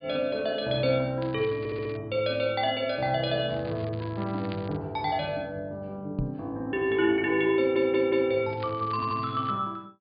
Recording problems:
low-pass filter; nothing above 4.9 kHz
crackle; at 1 s, from 3.5 to 5 s and from 8.5 to 9.5 s; loose cable, SNR 22 dB
stutter; at 1.5 s, at 7.5 s and at 9 s
microphone thump; at 6 s; peak +1 dB vs average level

